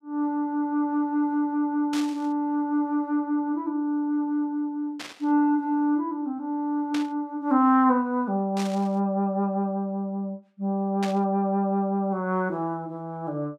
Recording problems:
burst of static; 5 times, first at 2 s; peak -4 dB vs average level

